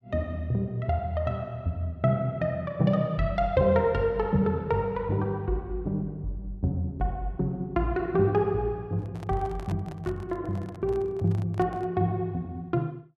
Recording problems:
microphone handling noise; from 9 to 12 s; peak -9 dB vs average level

